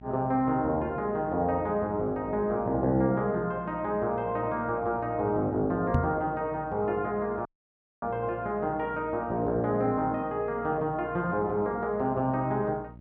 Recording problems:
hum; 60 Hz, harmonics up to 660 Hz, SNR 19 dB
knock on the microphone; at 6 s; peak +7 dB vs average level
dropout; at 7.5 s for 0.5 s

